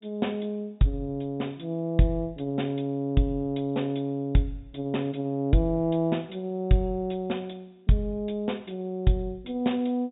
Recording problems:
low-pass filter; nothing above 4 kHz

